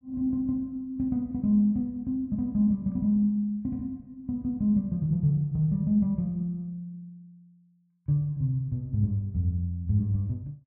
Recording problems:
none

